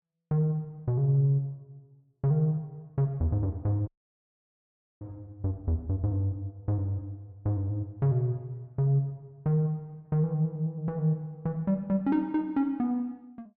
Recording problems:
audio cutting out; at 4 s for 1 s

